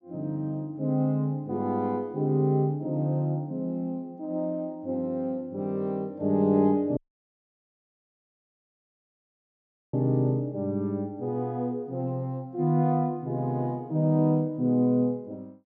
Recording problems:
treble missing; nothing above 8 kHz
audio cutting out; at 7 s for 3 s

